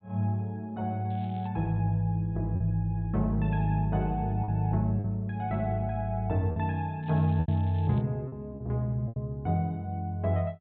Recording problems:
treble missing; nothing above 4 kHz
lost packets; 4% of the sound replaced, filled with repeated pitch periods
crackle; at 1 s and at 7 s; loose cable, SNR 29 dB

